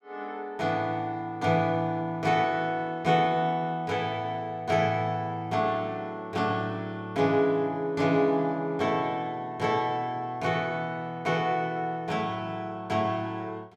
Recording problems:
none

